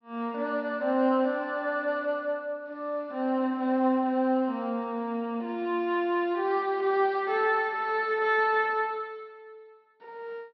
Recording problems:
low-pass filter; nothing above 5.7 kHz

